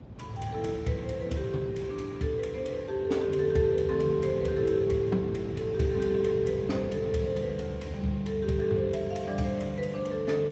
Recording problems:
codec artefacts; Speex, log-spectral distance 3 dB, nothing above 7.3 kHz
low-frequency rumble; below 280 Hz, SNR 14 dB
wind on the microphone; below 290 Hz, SNR 18 dB

